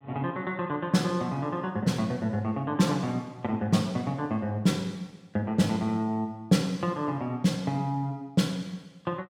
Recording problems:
none

